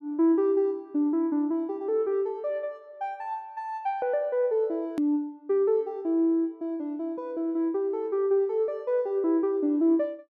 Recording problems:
hard cut with a click; at 5 s

